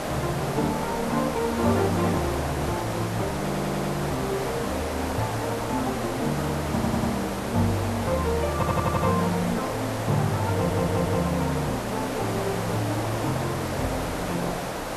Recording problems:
background hiss; SNR 2 dB
stutter; 4 times, first at 3.5 s

